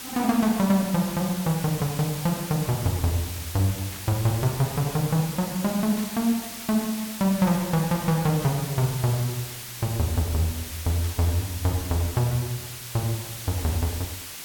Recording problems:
hiss; slope +1 dB per octave, SNR 9 dB
burst of static; 5 times, first at 2 s; peak -12 dB vs average level

